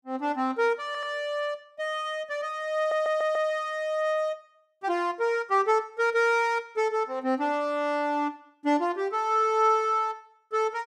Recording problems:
audio stuttering; at 1 s and at 3 s

